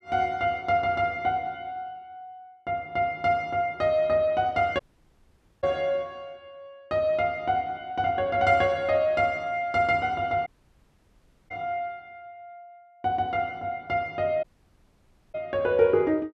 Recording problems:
audio cutting out; at 5 s for 1 s, at 10 s for 1 s and at 14 s for 1 s

